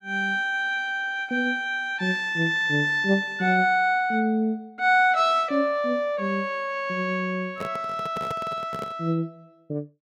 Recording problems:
handling noise; from 7.5 to 9 s; peak -7 dB vs average level

